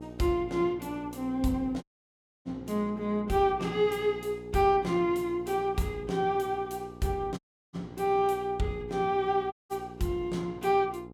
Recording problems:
electrical hum; 60 Hz, harmonics up to 960 Hz, SNR 16 dB
dropout; at 2 s for 0.5 s, at 7.5 s and at 9.5 s

